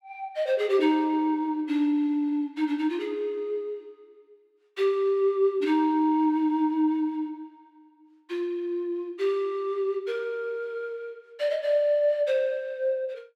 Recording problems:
none

